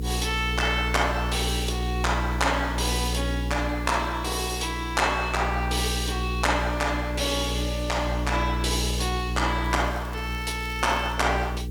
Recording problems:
mains hum; 60 Hz, harmonics up to 480 Hz, SNR 4 dB
hiss; slope +3 dB per octave, SNR 26 dB
crackling; from 9.5 to 11 s; loose cable, SNR 23 dB

